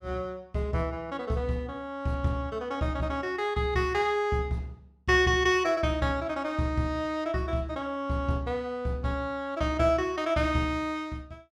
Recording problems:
none

